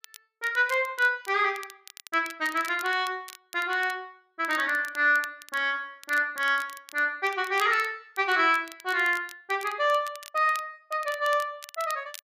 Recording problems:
crackling; vinyl, SNR 19 dB

